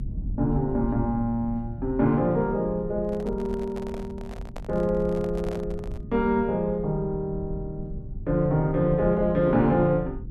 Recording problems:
low-frequency rumble; below 110 Hz, SNR 12 dB
handling noise; from 3 to 6 s; peak -10 dB vs average level

